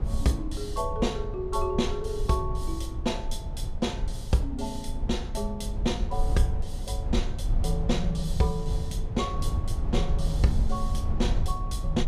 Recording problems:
rumble; below 72 Hz, SNR 1 dB

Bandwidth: 15 kHz